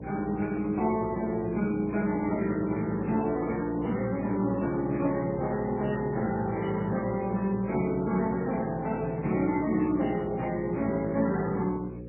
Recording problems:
codec artefacts; Speex, then MP3, log-spectral distance 4 dB
mains hum; 60 Hz, harmonics up to 540 Hz, SNR 12 dB

